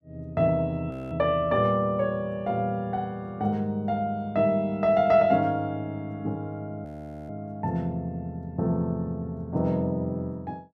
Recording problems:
frozen audio; at 1 s and at 7 s

